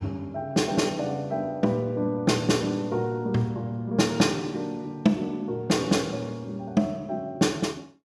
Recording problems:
none

